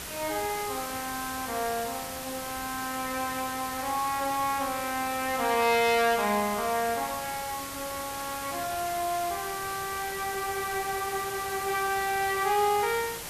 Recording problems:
hiss; slope -1 dB per octave, SNR 7 dB

